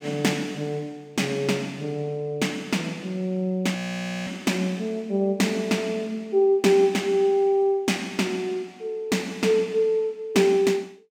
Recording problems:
frozen audio; at 4 s for 0.5 s

